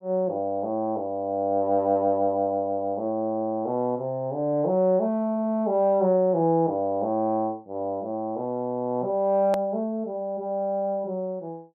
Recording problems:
click at an edit; at 9.5 s

